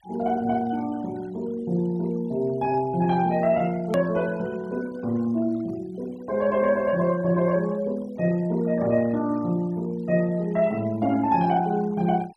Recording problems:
denoising artefacts; signal-to-artefact ratio 24 dB
click at an edit; at 4 s

